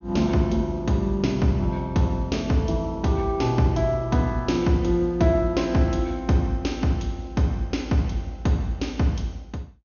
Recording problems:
low-pass filter; nothing above 6.6 kHz

